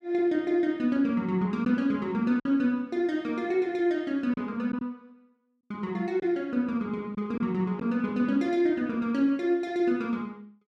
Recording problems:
packet loss; 1.9% of the sound replaced, filled with silence

